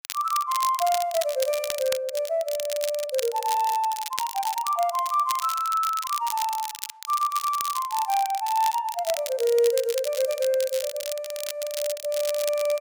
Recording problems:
crackle; vinyl, SNR 9 dB

